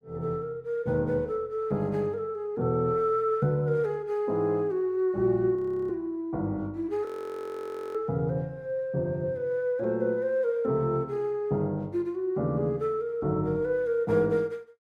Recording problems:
frozen audio; at 5.5 s and at 7 s for 1 s

